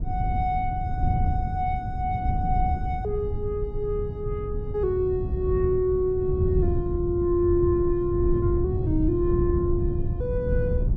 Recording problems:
wind noise; below 120 Hz, SNR 2 dB

